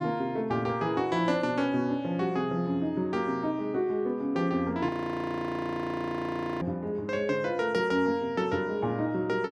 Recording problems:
frozen audio; at 5 s for 1.5 s

